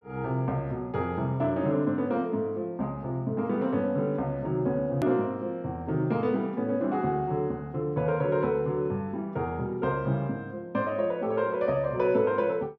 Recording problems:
hard cut with a click; at 5 s

